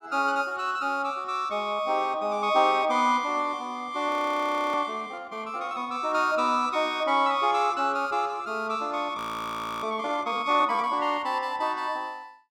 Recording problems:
frozen audio; at 4 s for 0.5 s and at 9 s for 0.5 s

